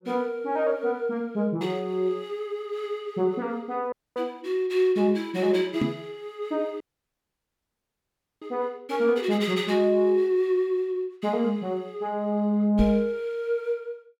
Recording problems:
audio cutting out; at 4 s and at 7 s for 1.5 s
microphone thump; at 6 s and at 13 s; peak +5 dB vs average level

